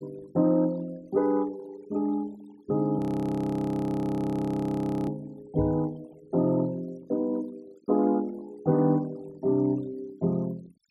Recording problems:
denoising artefacts; signal-to-artefact ratio 25 dB
frozen audio; at 3 s for 2 s
microphone bump; at 5.5 s; peak -1 dB vs average level

